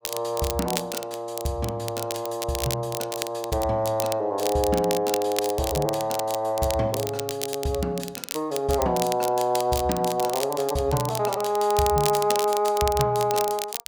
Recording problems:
crackling; vinyl, SNR 8 dB

